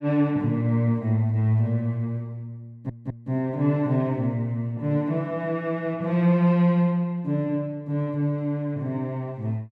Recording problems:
audio stuttering; at 2.5 s

